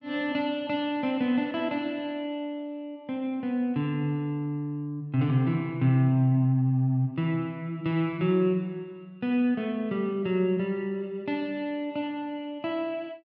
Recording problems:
none

